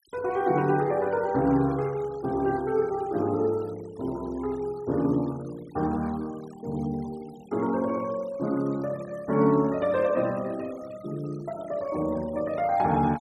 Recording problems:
denoising artefacts; signal-to-artefact ratio 23 dB

